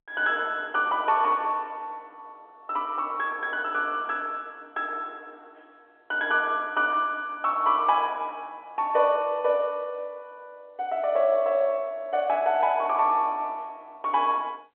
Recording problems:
telephone audio; 300 Hz to 3.4 kHz, G.711

